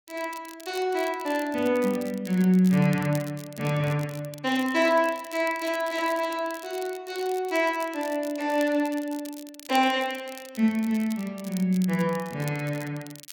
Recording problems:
crackling; vinyl, SNR 19 dB

